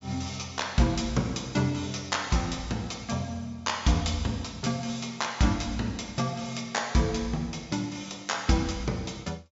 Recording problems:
treble cut off; nothing above 7.4 kHz

